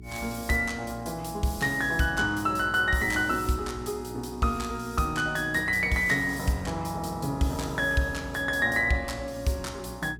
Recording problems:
mains hum; 60 Hz, harmonics up to 420 Hz, SNR 18 dB

